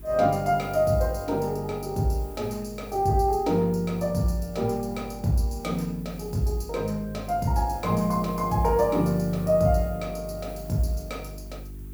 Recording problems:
electrical hum; 50 Hz, harmonics up to 400 Hz, SNR 16 dB
background hiss; SNR 23 dB

